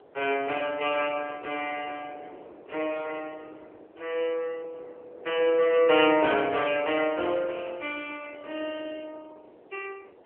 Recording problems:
telephone audio; 370 Hz to 3.2 kHz, AMR-NB
wind on the microphone; below 640 Hz, SNR 21 dB

